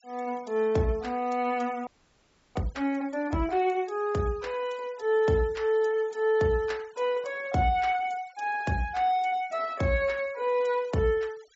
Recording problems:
treble missing; nothing above 8 kHz
noise reduction artefacts; signal-to-artefact ratio 26 dB
audio freezing; at 2 s for 0.5 s

